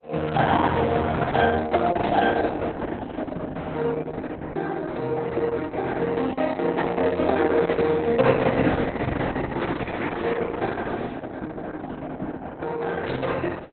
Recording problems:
lossy compression; Opus, log-spectral distance 4 dB, nothing above 3.9 kHz
burst of static; at 2 s and at 13 s; peak -7 dB vs average level

